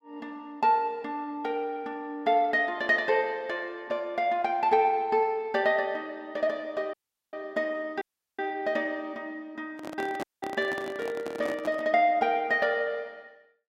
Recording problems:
audio cutting out; at 7 s, at 8 s and at 10 s
handling noise; from 10 to 12 s; peak -4 dB vs average level

